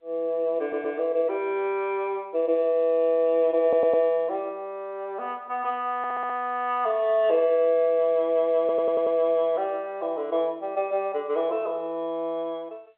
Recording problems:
telephone audio; 260 Hz to 3.9 kHz, G.711
audio stuttering; 4 times, first at 0.5 s

